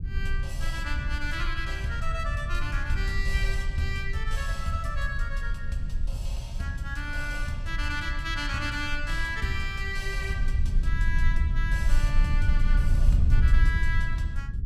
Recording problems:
rumble; below 64 Hz, SNR -3 dB

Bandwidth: 14.5 kHz